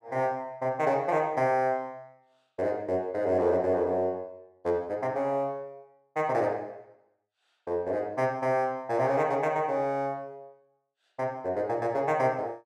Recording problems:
none

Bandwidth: 13.5 kHz